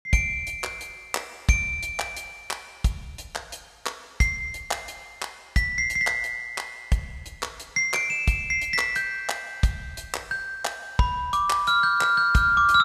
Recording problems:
none

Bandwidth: 14.5 kHz